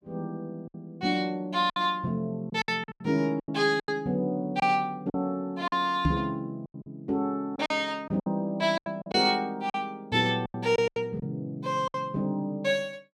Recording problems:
packet loss; 10% of the sound replaced, filled with silence
knock on the microphone; at 6 s; peak +7 dB vs average level

